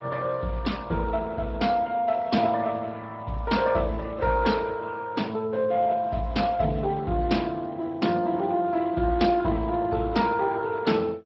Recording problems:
codec artefacts; MP2, then Speex, log-spectral distance 3 dB

